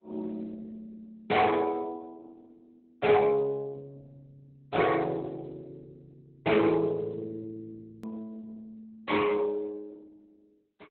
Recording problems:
codec artefacts; Speex, then Opus, log-spectral distance 3 dB, nothing above 4 kHz
distorted audio; soft clipping, signal-to-distortion ratio 12 dB
click at an edit; at 8 s

